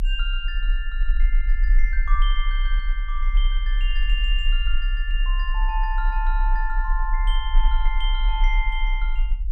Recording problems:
low-frequency rumble; below 36 Hz, strongest tone 32 Hz, SNR -6 dB

